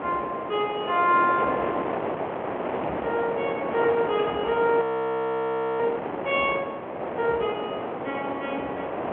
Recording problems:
telephone audio; 280 Hz to 3.3 kHz, G.711
background hiss; SNR 43 dB
wind noise; below 930 Hz, SNR 4 dB
frozen audio; at 5 s for 1 s

